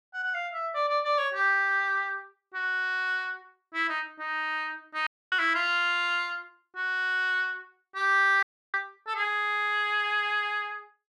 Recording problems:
audio cutting out; at 5 s and at 8.5 s

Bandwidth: 13 kHz